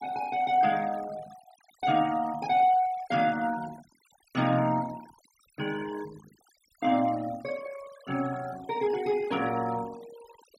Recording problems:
noise reduction artefacts; signal-to-artefact ratio 19 dB

